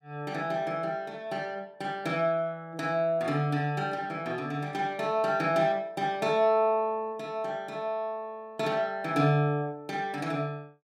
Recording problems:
none

